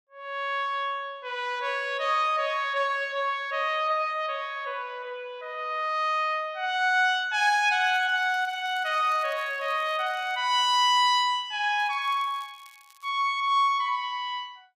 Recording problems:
crackle; from 8 to 10 s and from 12 to 13 s; loose cable, SNR 29 dB

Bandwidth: 15.5 kHz